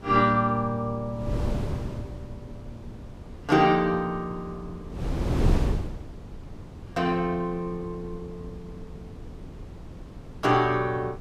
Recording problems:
wind on the microphone; below 220 Hz, SNR 9 dB

